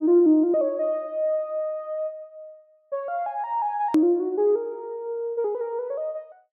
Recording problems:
hard cut with a click; at 4 s

